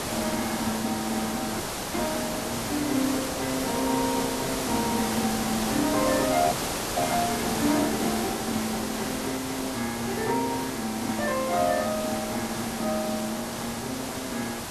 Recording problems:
hiss; slope -4 dB per octave, SNR 2 dB
audio freezing; at 1.5 s and at 6.5 s

